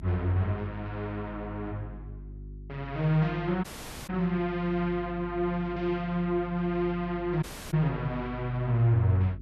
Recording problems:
electrical hum; 50 Hz, harmonics up to 400 Hz, SNR 15 dB
audio cutting out; at 3.5 s and at 7.5 s

